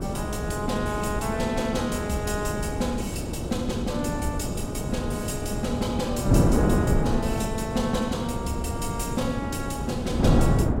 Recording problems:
wind on the microphone; below 330 Hz, SNR -2 dB

